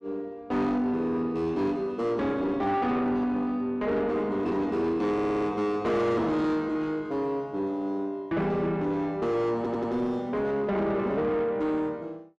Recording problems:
distorted audio; soft clipping, signal-to-distortion ratio 10 dB
stutter; at 5 s and at 9.5 s

